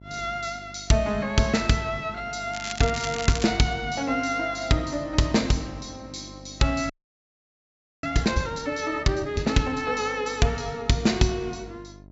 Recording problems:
treble missing; nothing above 8 kHz
hum; 50 Hz, harmonics up to 750 Hz, SNR 21 dB
crackling; at 2.5 s; loose cable, SNR 9 dB
frozen audio; at 7 s for 1 s

